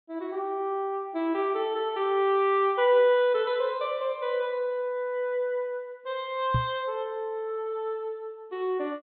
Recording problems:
treble missing; nothing above 4 kHz
microphone bump; at 6.5 s; peak +4 dB vs average level

